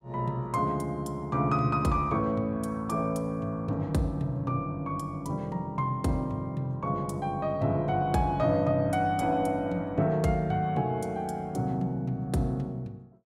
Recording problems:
none

